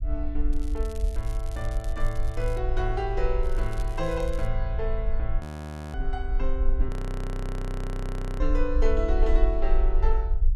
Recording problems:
rumble; below 48 Hz, strongest tone 18 Hz, SNR -3 dB
crackle; from 0.5 to 2.5 s and from 3.5 to 4.5 s; loose cable, SNR 18 dB
frozen audio; at 5.5 s for 0.5 s and at 7 s for 1.5 s

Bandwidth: 12 kHz